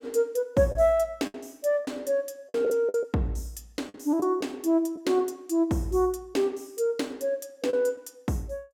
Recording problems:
packet loss; 5% of the sound replaced, filled with the last packet

